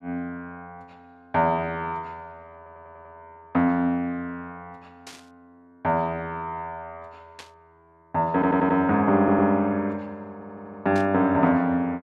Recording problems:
audio stuttering; 4 times, first at 2.5 s
static burst; at 5 s, at 7.5 s and at 11 s; peak -12 dB vs average level

